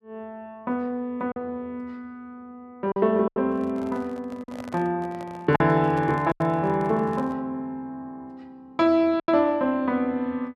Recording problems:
lost packets; 4% of the sound replaced, filled with silence
microphone handling noise; from 3.5 to 7.5 s; peak -10 dB vs average level

